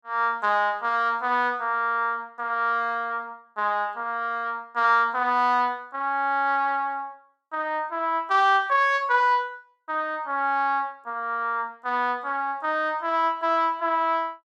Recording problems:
none

